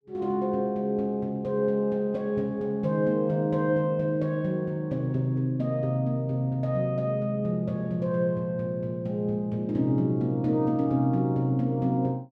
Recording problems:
none

